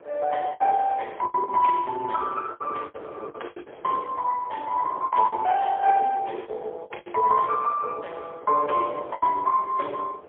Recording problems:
telephone audio; 370 Hz to 3.3 kHz, AMR-NB, then MP3
wind noise; below 700 Hz, SNR 19 dB
packet loss; 10% of the sound replaced, filled with the last packet

